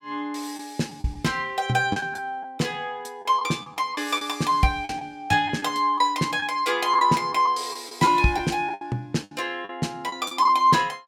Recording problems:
lost packets; 7% of the sound replaced, filled with the last packet

